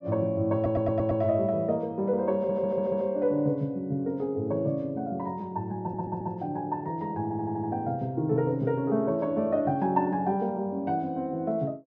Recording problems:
stutter; 4 times, first at 0.5 s

